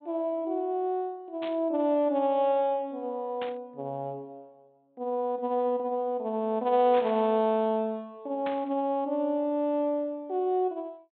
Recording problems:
treble cut off; nothing above 4 kHz
static burst; 4 times, first at 1.5 s; peak -7 dB vs average level

